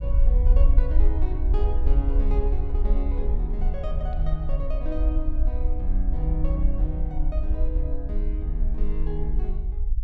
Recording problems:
rumble; below 50 Hz, SNR -9 dB

